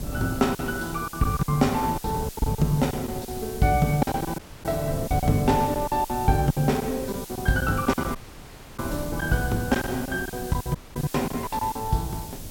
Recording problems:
hiss; slope 0 dB per octave, SNR 14 dB
wind on the microphone; below 220 Hz, SNR 12 dB
packet loss; 12% of the sound replaced, filled with silence
audio cutting out; at 4.5 s, at 8 s for 0.5 s and at 11 s

